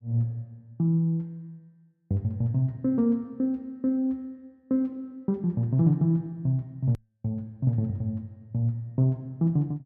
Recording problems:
hard cut with a click; at 7 s

